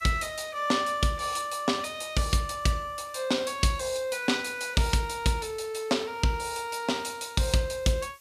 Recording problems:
hiss; slope +3 dB per octave, SNR 28 dB

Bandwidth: 14.5 kHz